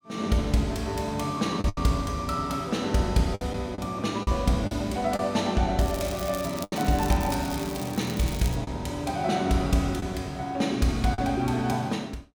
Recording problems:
packet loss; 4% of the sound replaced, filled with the last packet
crackle; from 6 to 8.5 s; loose cable, SNR 13 dB

